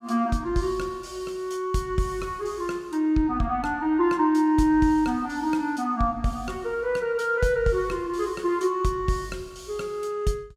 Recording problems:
none

